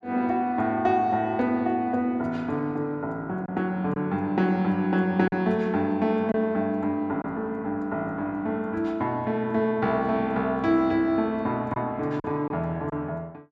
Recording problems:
lost packets; 1.6% of the sound replaced, filled with silence

